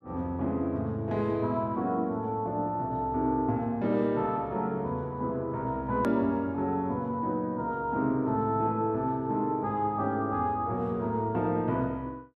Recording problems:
click at an edit; at 6 s

